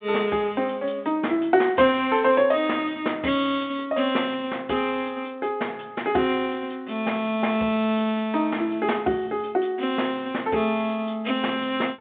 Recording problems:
telephone audio; 150 Hz to 3.7 kHz, G.726

